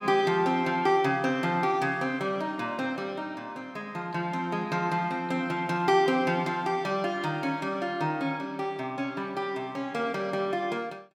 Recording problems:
none

